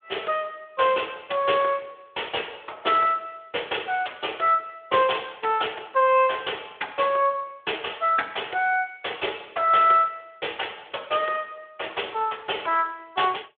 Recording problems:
phone line; 340 Hz to 3.5 kHz, Speex

